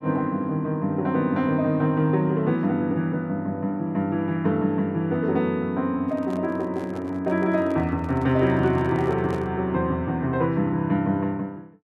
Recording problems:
handling noise; from 6 to 9.5 s; peak -9 dB vs average level

